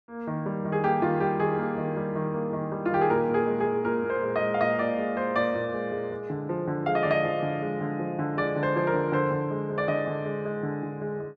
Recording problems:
none

